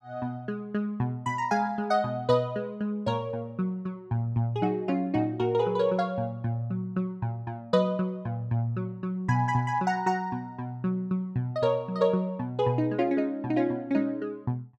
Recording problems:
none

